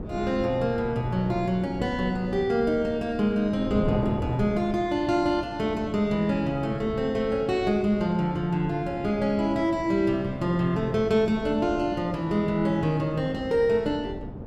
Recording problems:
wind noise; below 370 Hz, SNR 11 dB

